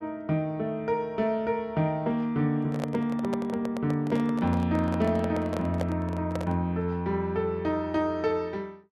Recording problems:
microphone handling noise; from 2.5 to 6.5 s; peak -1 dB vs average level

